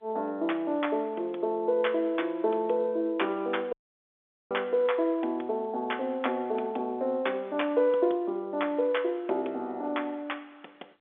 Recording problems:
phone line; 300 Hz to 3.5 kHz, G.711
dropout; at 3.5 s for 1 s

